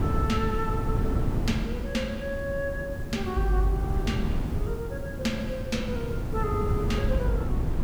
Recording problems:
hum; 50 Hz, harmonics up to 350 Hz, SNR 15 dB
hiss; slope -2 dB per octave, SNR 21 dB
wind noise; below 170 Hz, SNR 0 dB

